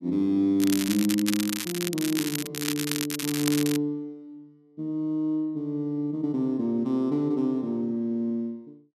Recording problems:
crackle; from 0.5 to 4 s; loose cable, SNR 4 dB

